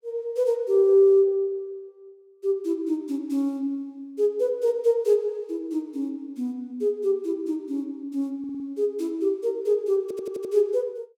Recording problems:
audio stuttering; at 8.5 s and at 10 s

